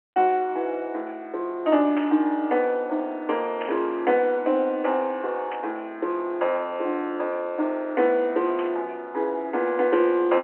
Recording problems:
phone line; 260 Hz to 3.3 kHz, G.711
static burst; 4 times, first at 2 s; peak -6 dB vs average level

